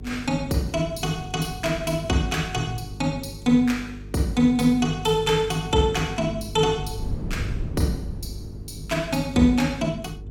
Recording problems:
hum; 50 Hz, harmonics up to 450 Hz, SNR 15 dB
wind noise; below 160 Hz, SNR 16 dB

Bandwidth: 17 kHz